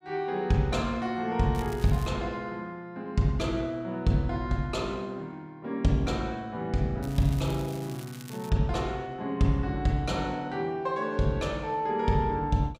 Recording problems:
crackle; at 1.5 s and from 7 to 8.5 s; loose cable, SNR 19 dB

